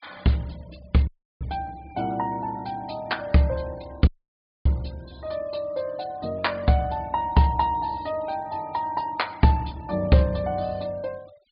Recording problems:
treble missing; nothing above 4.8 kHz
noise reduction artefacts; signal-to-artefact ratio 26 dB
audio cutting out; at 1 s and at 4 s for 0.5 s

